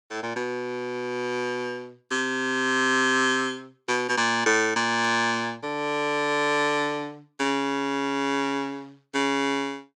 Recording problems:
burst of static; at 5 s; peak -13 dB vs average level

